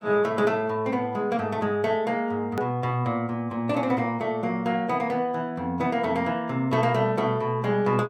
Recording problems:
edit click; at 2.5 s

